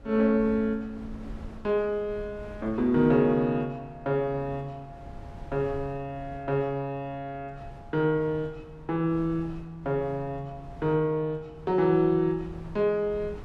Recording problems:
wind noise; below 190 Hz, SNR 19 dB

